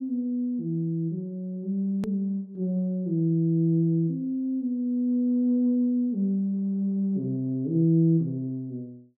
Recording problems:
edit click; at 2 s

